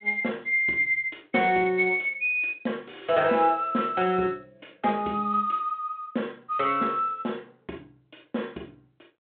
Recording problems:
phone line; 220 Hz to 3.5 kHz, G.726

